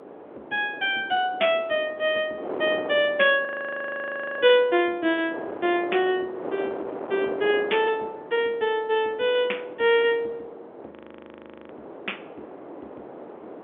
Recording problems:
phone line; 280 Hz to 3.5 kHz, G.711
wind noise; below 720 Hz, SNR 14 dB
audio freezing; at 3.5 s for 1 s and at 11 s for 1 s

